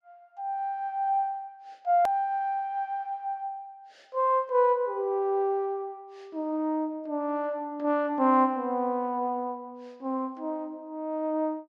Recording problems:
edit click; at 2 s

